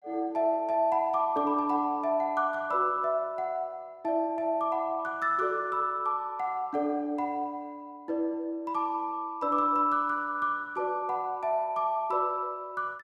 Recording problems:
none

